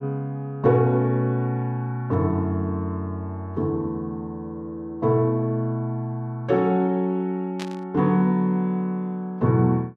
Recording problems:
burst of static; at 7.5 s; peak -7 dB vs average level

